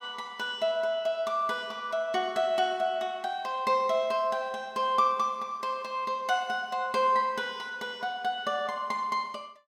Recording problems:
none

